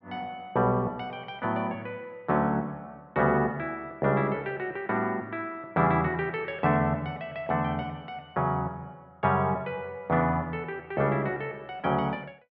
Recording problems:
none

